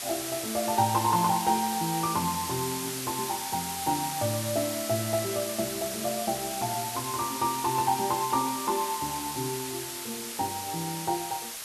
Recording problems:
hiss; slope +1 dB per octave, SNR 4 dB

